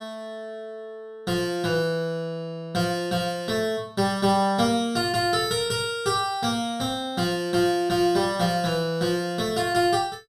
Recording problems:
none

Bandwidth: 14.5 kHz